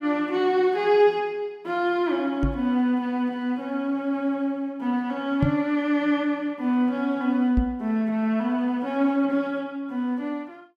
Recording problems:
microphone bump; at 2.5 s, at 5.5 s and at 7.5 s; peak +6 dB vs average level

